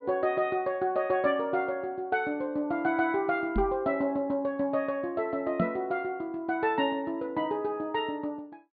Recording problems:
treble missing; nothing above 4.6 kHz
knock on the microphone; at 3.5 s and at 5.5 s; peak +5 dB vs average level

